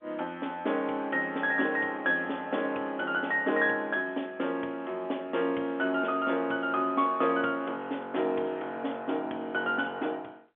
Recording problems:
telephone audio; 240 Hz to 3.5 kHz, G.711

